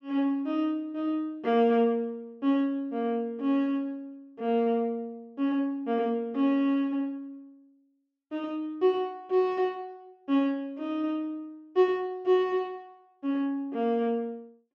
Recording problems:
none

